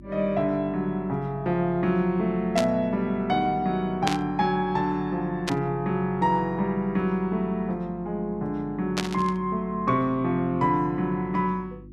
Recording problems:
hum; 50 Hz, harmonics up to 350 Hz, SNR 19 dB
burst of static; 4 times, first at 2.5 s; peak +3 dB vs average level

